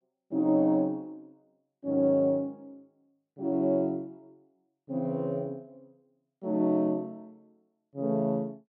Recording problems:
none

